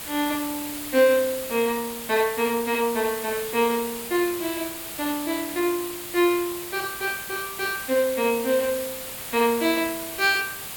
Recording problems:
hiss; slope -1 dB per octave, SNR 8 dB

